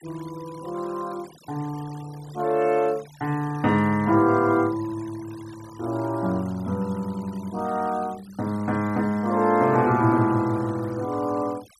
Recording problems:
denoising artefacts; signal-to-artefact ratio 24 dB

